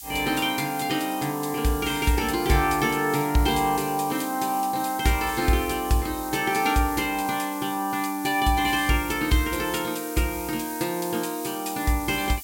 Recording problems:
background hiss; SNR 12 dB

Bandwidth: 16.5 kHz